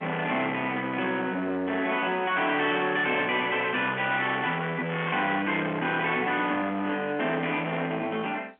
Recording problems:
telephone audio; 220 Hz to 3.5 kHz, G.711
distorted audio; soft clipping, signal-to-distortion ratio 9 dB

